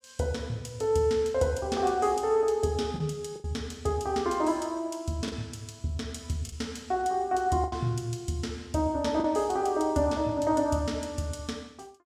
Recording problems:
lost packets; 3% of the sound replaced, filled with the last packet

